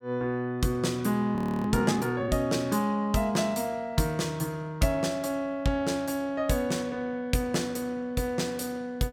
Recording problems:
frozen audio; at 1.5 s

